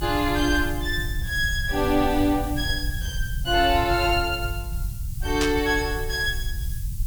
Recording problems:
hiss; slope +4 dB per octave, SNR 16 dB
low-frequency rumble; below 88 Hz, SNR 7 dB
static burst; at 5.5 s; peak +1 dB vs average level

